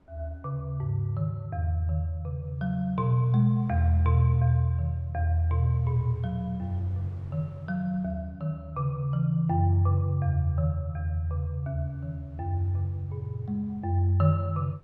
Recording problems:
wind noise; below 450 Hz, SNR 28 dB

